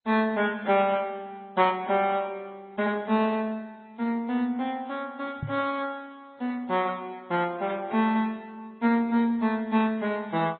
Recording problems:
lossy compression; MP3, then MP2, log-spectral distance 2 dB, nothing above 3.8 kHz
microphone bump; at 5.5 s; peak -2 dB vs average level

